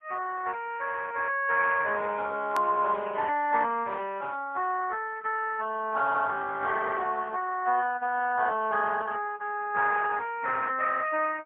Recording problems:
telephone audio; 260 Hz to 3.3 kHz, AMR-NB, then MP3
click at an edit; at 2.5 s

